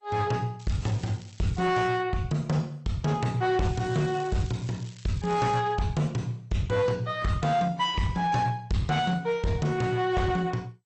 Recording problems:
lossy codec; AAC, then MP2, log-spectral distance 3 dB, nothing above 8 kHz
distortion; hard clipping, uneven, signal-to-distortion ratio 11 dB
crackling; from 0.5 to 1.5 s and from 3.5 to 5.5 s; loose cable, SNR 23 dB

